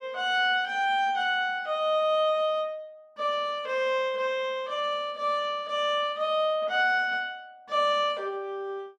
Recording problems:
none

